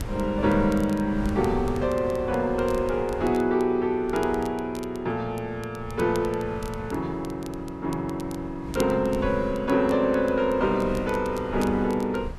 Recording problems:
wind noise; below 160 Hz, SNR 14 dB
crackle; vinyl, SNR 23 dB

